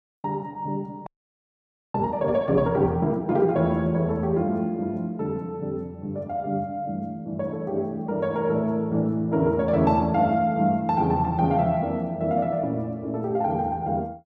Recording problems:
frozen audio; at 1 s for 1 s

